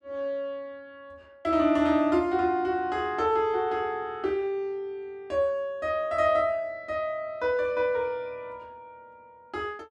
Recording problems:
none

